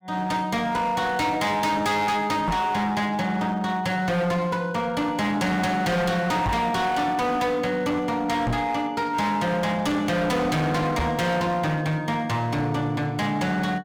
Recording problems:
distortion; hard clipping, uneven, signal-to-distortion ratio 7 dB
knock on the microphone; 4 times, first at 2.5 s; peak +2 dB vs average level

